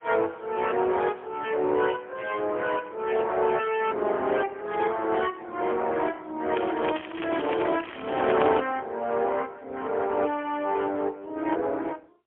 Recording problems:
telephone audio; 280 Hz to 3.5 kHz, AMR-NB, then MP3
crackling; from 6.5 to 8.5 s; loose cable, SNR 12 dB

